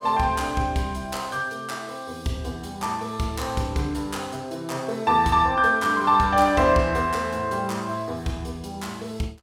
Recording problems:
none

